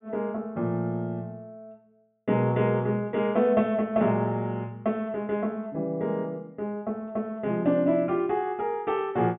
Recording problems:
treble missing; nothing above 3.6 kHz

